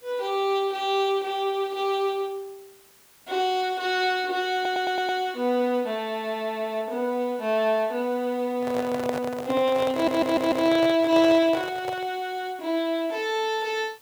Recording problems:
hiss; slope -1 dB per octave, SNR 27 dB
audio stuttering; at 4.5 s and at 10 s
handling noise; from 8.5 to 12 s; peak -1 dB vs average level

